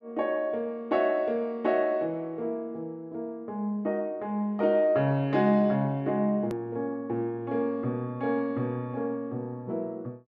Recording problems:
edit click; at 6.5 s

